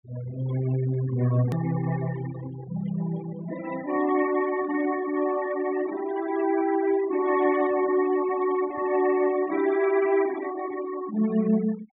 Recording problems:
low-pass filter; nothing above 4 kHz
denoising artefacts; signal-to-artefact ratio 14 dB
click at an edit; at 1.5 s

